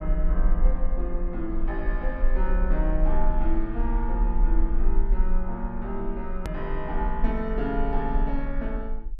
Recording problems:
low-frequency rumble; below 38 Hz, strongest tone 20 Hz, SNR -3 dB
click at an edit; at 6.5 s

